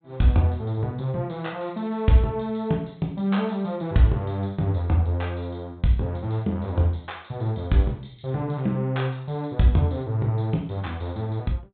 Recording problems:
treble missing; nothing above 4 kHz

